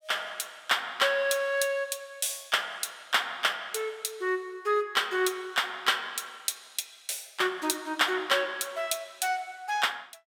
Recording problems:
none

